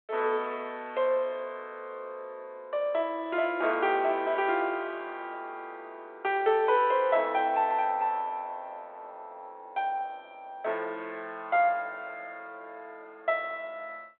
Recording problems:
phone line; 320 Hz to 3.5 kHz, G.726

